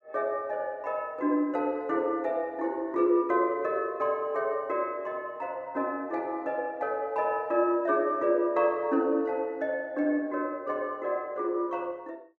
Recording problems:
none

